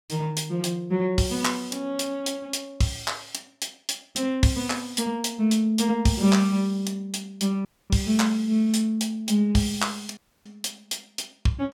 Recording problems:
audio cutting out; at 7.5 s and at 10 s

